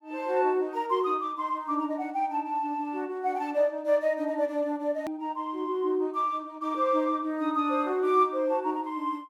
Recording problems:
edit click; at 5 s

